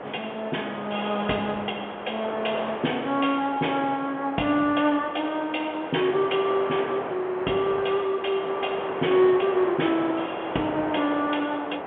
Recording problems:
phone line; 260 Hz to 3.4 kHz, G.711
wind on the microphone; below 1.1 kHz, SNR 8 dB

